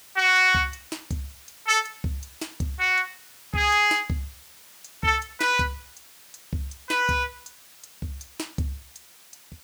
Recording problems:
hiss; slope +1 dB per octave, SNR 23 dB

